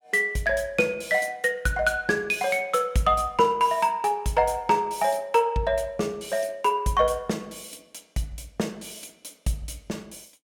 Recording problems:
none

